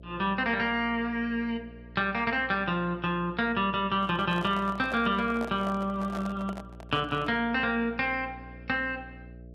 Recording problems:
hum; 60 Hz, harmonics up to 660 Hz, SNR 19 dB
handling noise; from 4 to 7.5 s; peak -6 dB vs average level

